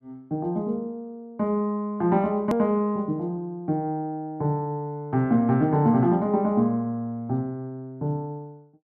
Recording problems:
click at an edit; at 2.5 s

